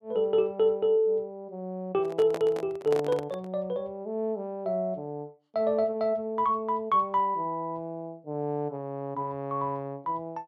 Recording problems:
microphone handling noise; from 2 to 3.5 s; peak -2 dB vs average level

